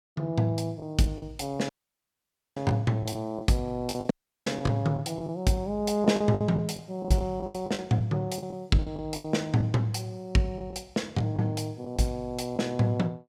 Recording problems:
lost packets; 10% of the sound replaced, filled with the last packet
dropout; at 1.5 s for 1 s and at 4 s

